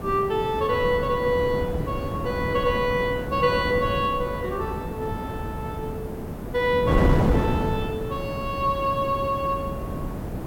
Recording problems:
background hiss; slope +2 dB per octave, SNR 27 dB
wind on the microphone; below 390 Hz, SNR 4 dB

